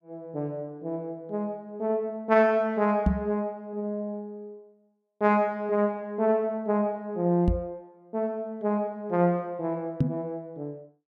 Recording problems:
knock on the microphone; at 3 s, at 7.5 s and at 10 s; peak +8 dB vs average level

